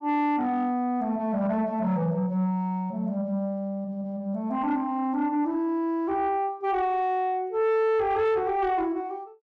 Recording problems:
distortion; soft clipping, signal-to-distortion ratio 12 dB

